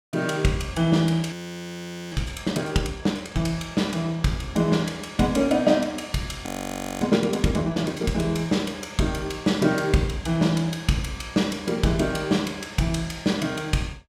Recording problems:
audio freezing; at 1.5 s for 1 s and at 6.5 s for 0.5 s

